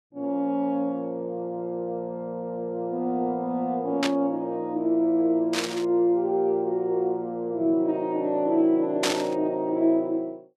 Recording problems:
static burst; at 4 s, at 5.5 s and at 9 s; peak +4 dB vs average level

